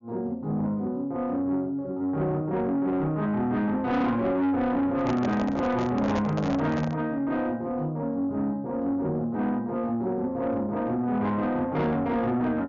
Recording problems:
low-pass filter; nothing above 6.9 kHz
distortion; soft clipping, signal-to-distortion ratio 10 dB
handling noise; from 5 to 7 s; peak 0 dB vs average level

